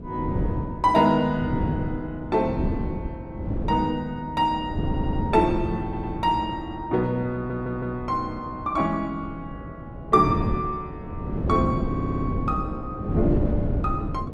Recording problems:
hum; 60 Hz, harmonics up to 720 Hz, SNR 20 dB
wind on the microphone; below 270 Hz, SNR 4 dB
stutter; 4 times, first at 5 s

